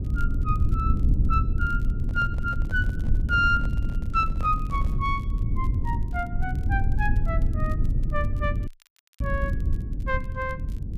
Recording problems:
rumble; below 100 Hz, SNR -2 dB
crackling; vinyl, SNR 30 dB
handling noise; from 2 to 5 s; peak -9 dB vs average level
dropout; at 8.5 s for 0.5 s

